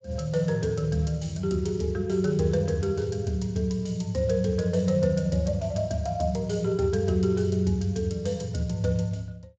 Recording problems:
lossy codec; Speex, log-spectral distance 2 dB, nothing above 7.3 kHz

